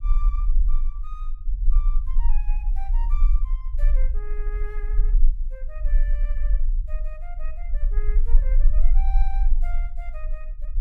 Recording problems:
low-frequency rumble; below 36 Hz, strongest tone 18 Hz, SNR -19 dB

